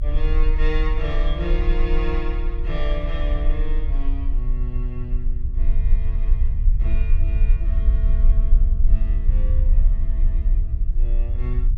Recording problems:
rumble; below 44 Hz, strongest tone 30 Hz, SNR -10 dB

